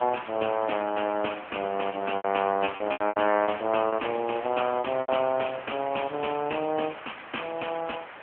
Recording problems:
phone line; 280 Hz to 3.2 kHz, AMR-NB
hiss; SNR 13 dB
packet loss; 7% of the sound replaced, filled with repeated pitch periods

